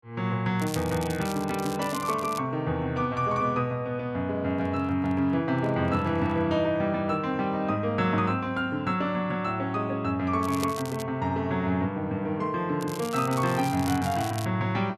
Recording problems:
crackle; from 0.5 to 2.5 s, at 10 s and from 13 to 14 s; loose cable, SNR 14 dB
microphone handling noise; from 4.5 to 6.5 s; peak -11 dB vs average level

